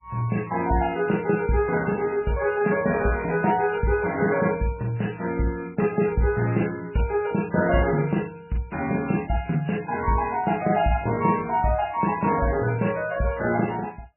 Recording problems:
codec artefacts; MP3, log-spectral distance 5 dB, nothing above 2.7 kHz

